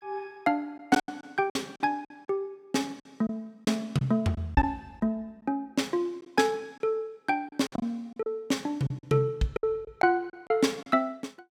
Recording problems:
lost packets; 8% of the sound replaced, filled with silence

